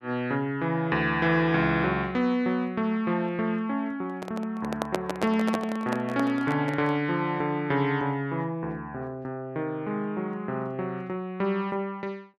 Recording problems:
microphone handling noise; from 4 to 7 s; peak +3 dB vs average level

